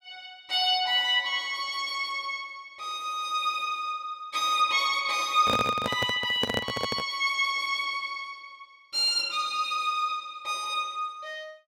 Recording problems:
handling noise; from 5.5 to 7 s; peak +1 dB vs average level

